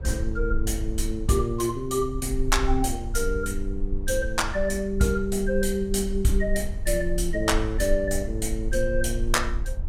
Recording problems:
low-frequency rumble; below 50 Hz, strongest tone 22 Hz, SNR 6 dB

